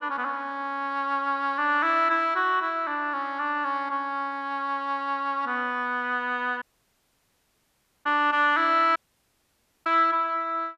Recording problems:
audio cutting out; at 6.5 s for 1.5 s and at 9 s for 1 s

